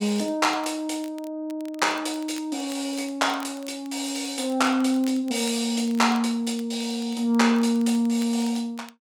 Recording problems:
crackle; vinyl, SNR 24 dB

